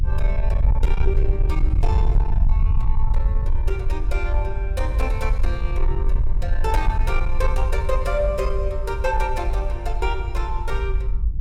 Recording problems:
distorted audio; soft clipping, signal-to-distortion ratio 11 dB
rumble; below 56 Hz, SNR -5 dB

